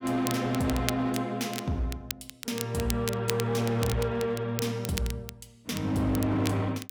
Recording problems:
distorted audio; hard clipping, signal-to-distortion ratio 12 dB
crackling; vinyl, SNR 10 dB

